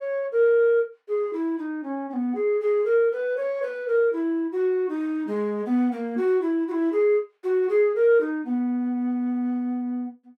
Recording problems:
none

